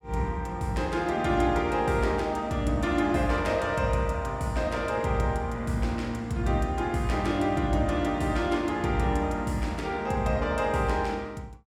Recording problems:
none

